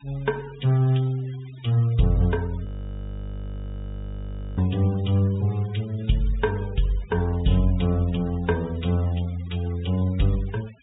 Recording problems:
treble cut off; nothing above 4 kHz
denoising artefacts; signal-to-artefact ratio 22 dB
frozen audio; at 2.5 s for 2 s

